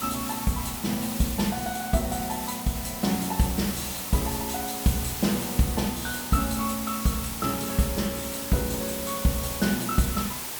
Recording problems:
background hiss; slope -1 dB per octave, SNR 4 dB

